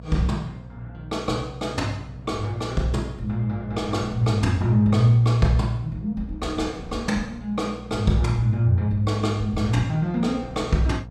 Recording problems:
hum; 60 Hz, harmonics up to 720 Hz, SNR 17 dB
wind noise; below 380 Hz, SNR 23 dB

